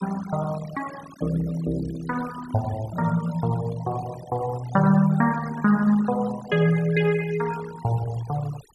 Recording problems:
noise reduction artefacts; signal-to-artefact ratio 18 dB

